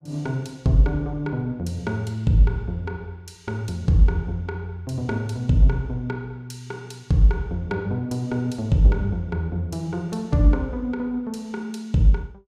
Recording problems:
none

